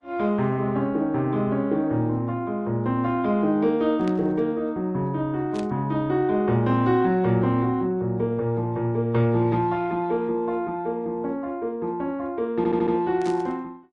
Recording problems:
lossy compression; Opus, then MP3, log-spectral distance 2 dB
burst of static; at 4 s, at 5.5 s and at 13 s; peak -13 dB vs average level
stutter; at 13 s

